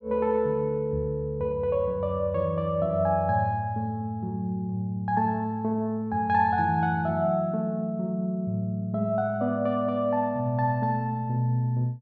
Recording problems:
none

